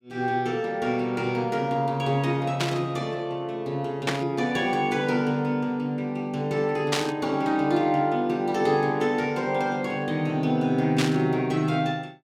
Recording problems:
static burst; 4 times, first at 2.5 s; peak +4 dB vs average level

